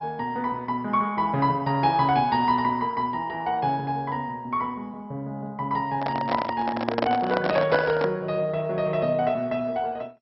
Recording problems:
lossy compression; MP2, log-spectral distance 2 dB, nothing above 4.8 kHz
microphone handling noise; from 6 to 8 s; peak +4 dB vs average level

